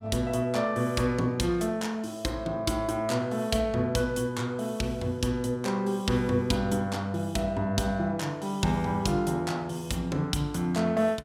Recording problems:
none

